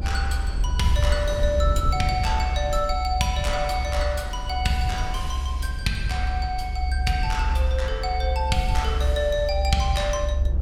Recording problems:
low-frequency rumble; below 68 Hz, strongest tone 66 Hz, SNR 0 dB

